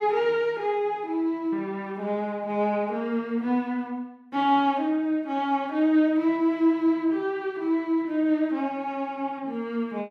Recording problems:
none

